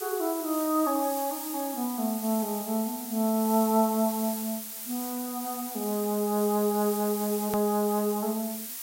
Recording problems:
background hiss; slope +3 dB per octave, SNR 7 dB
click at an edit; at 7.5 s

